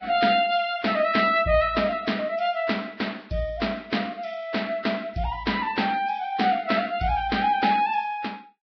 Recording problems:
codec artefacts; Vorbis, log-spectral distance 3 dB

